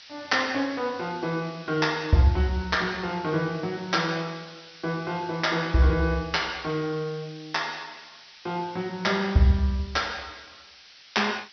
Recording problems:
treble cut off; nothing above 5.8 kHz
hiss; SNR 20 dB

